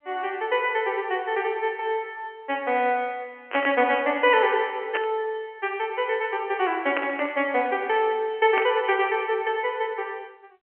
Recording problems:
telephone audio; 260 Hz to 3.1 kHz, G.711
burst of static; 4 times, first at 3.5 s; peak 0 dB vs average level

